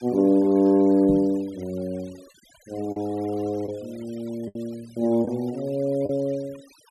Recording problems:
noise reduction artefacts; signal-to-artefact ratio 26 dB
packet loss; 3% of the sound replaced, filled with the last packet
microphone thump; at 1 s; peak -2 dB vs average level

